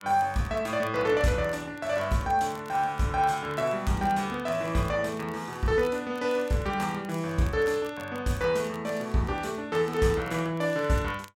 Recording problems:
crackle; vinyl, SNR 25 dB

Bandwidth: 16 kHz